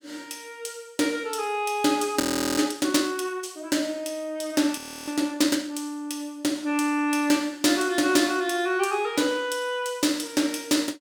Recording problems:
audio freezing; at 2 s and at 5 s

